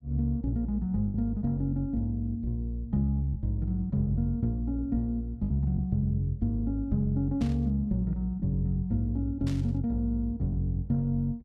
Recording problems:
lost packets; 1.8% of the sound replaced, filled with the last packet
static burst; at 7.5 s and at 9.5 s; peak -12 dB vs average level

